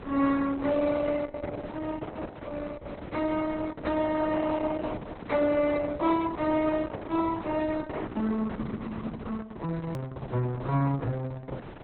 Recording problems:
lossy compression; Vorbis, then Opus, log-spectral distance 4 dB, nothing above 3.7 kHz
hiss; SNR 14 dB
click at an edit; at 10 s

